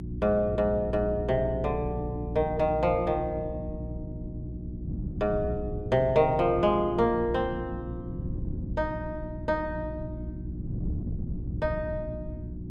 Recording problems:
hum; 60 Hz, harmonics up to 360 Hz, SNR 10 dB
wind on the microphone; below 160 Hz, SNR 11 dB

